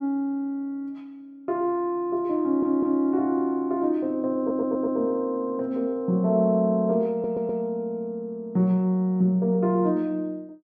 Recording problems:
stutter; at 2.5 s, at 4.5 s and at 7 s

